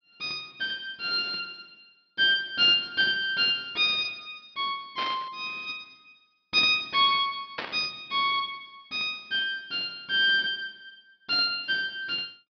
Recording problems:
treble cut off; nothing above 5.5 kHz
burst of static; at 5 s and at 7.5 s; peak -3 dB vs average level

